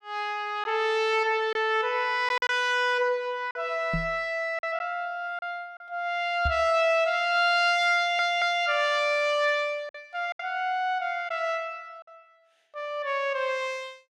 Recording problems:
packet loss; 3% of the sound replaced, filled with silence
microphone bump; at 4 s and at 6.5 s; peak -1 dB vs average level
audio stuttering; at 8 s

